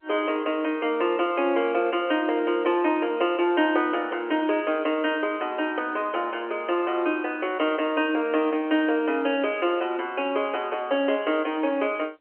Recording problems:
phone line; 260 Hz to 3.1 kHz, G.711

